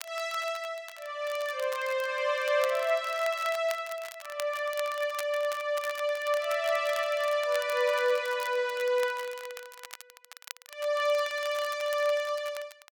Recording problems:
crackling; vinyl, SNR 16 dB

